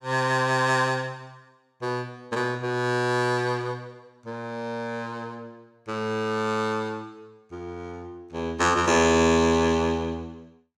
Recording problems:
none

